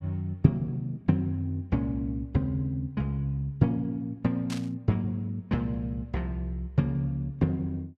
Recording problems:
burst of static; at 4.5 s; peak -5 dB vs average level

